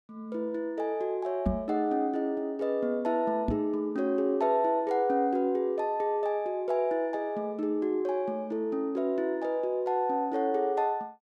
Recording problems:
knock on the microphone; at 1.5 s and at 3.5 s; peak +3 dB vs average level

